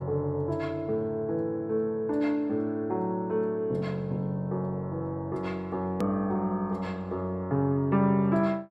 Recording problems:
edit click; at 6 s

